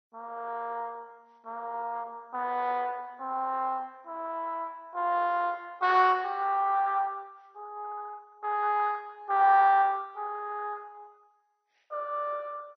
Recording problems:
lossy compression; MP2, log-spectral distance 3 dB, nothing above 5.2 kHz

